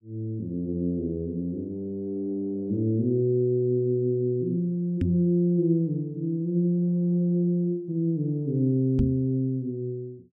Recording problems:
microphone bump; at 5 s and at 9 s; peak +4 dB vs average level

